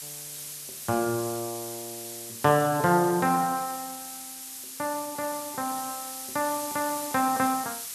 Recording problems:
hiss; slope +3 dB per octave, SNR 8 dB

